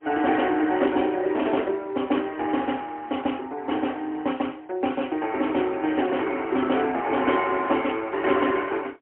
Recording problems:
telephone audio; 240 Hz to 3.2 kHz, AMR-NB, then MP3

